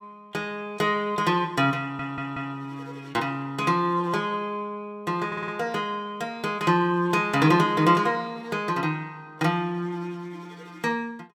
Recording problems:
audio stuttering; at 2 s and at 5.5 s

